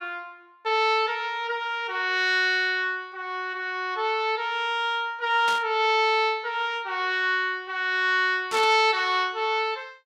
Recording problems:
static burst; at 5.5 s and at 8.5 s; peak -5 dB vs average level

